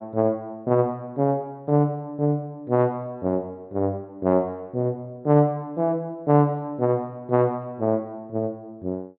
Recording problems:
treble missing; nothing above 4.1 kHz

